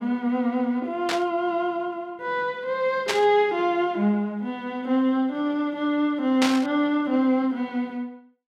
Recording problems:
burst of static; at 1 s, at 3 s and at 6.5 s; peak +3 dB vs average level

